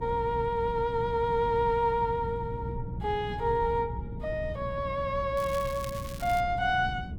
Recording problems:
hum; 60 Hz, harmonics up to 360 Hz, SNR 14 dB
wind noise; below 170 Hz, SNR 11 dB
crackling; from 5.5 to 6.5 s; loose cable, SNR 16 dB

